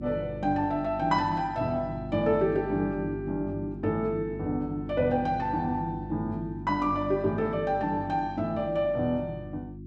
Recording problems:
hum; 50 Hz, harmonics up to 350 Hz, SNR 10 dB

